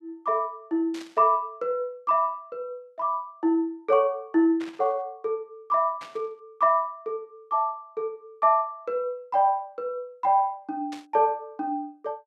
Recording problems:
burst of static; 4 times, first at 1 s; peak -12 dB vs average level

